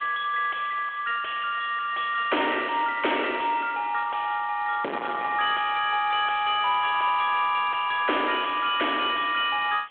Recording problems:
phone line; 320 Hz to 3.4 kHz, G.726
distorted audio; soft clipping, signal-to-distortion ratio 6 dB
hiss; SNR 28 dB

